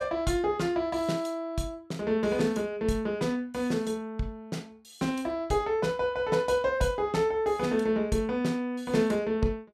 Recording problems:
none

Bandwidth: 14.5 kHz